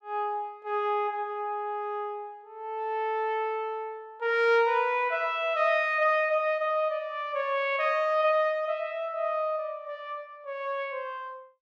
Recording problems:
none

